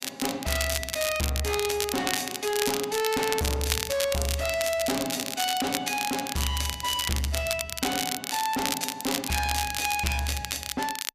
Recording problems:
distortion; hard clipping, signal-to-distortion ratio 6 dB
crackling; vinyl, SNR 2 dB

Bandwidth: 14.5 kHz